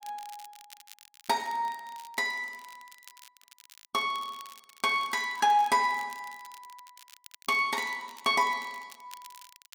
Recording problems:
crackling; vinyl, SNR 23 dB

